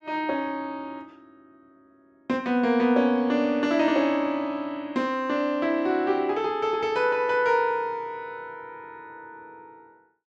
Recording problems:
none

